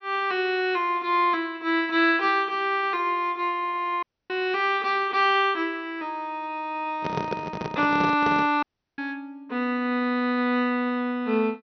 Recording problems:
treble cut off; nothing above 6.1 kHz
dropout; at 4 s and at 8.5 s
handling noise; from 7 to 8.5 s; peak -1 dB vs average level

